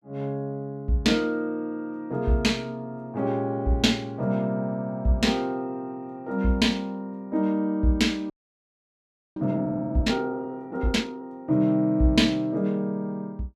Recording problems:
frozen audio; at 8.5 s for 1 s

